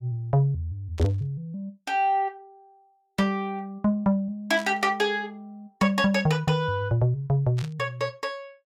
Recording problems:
static burst; at 1 s, at 4.5 s and at 7.5 s; peak -10 dB vs average level

